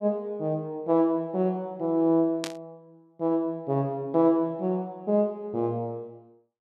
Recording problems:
static burst; at 2.5 s; peak -3 dB vs average level

